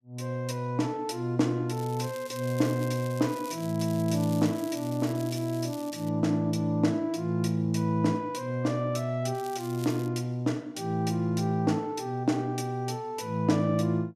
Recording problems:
crackling; from 2 to 6 s and at 9.5 s; loose cable, SNR 18 dB

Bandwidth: 14.5 kHz